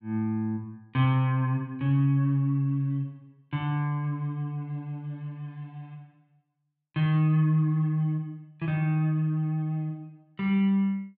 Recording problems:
none

